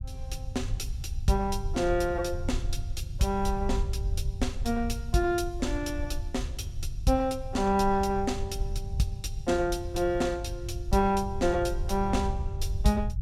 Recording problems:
low-frequency rumble; below 82 Hz, SNR 6 dB

